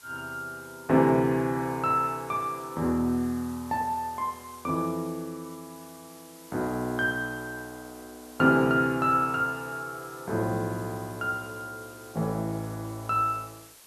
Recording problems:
background hiss; slope 0 dB per octave, SNR 21 dB

